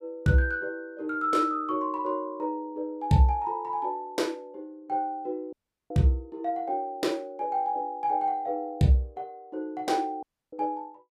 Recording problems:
audio cutting out; at 5.5 s and at 10 s

